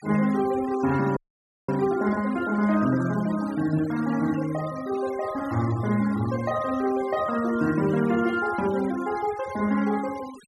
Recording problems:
denoising artefacts; signal-to-artefact ratio 17 dB
frozen audio; at 1 s for 0.5 s

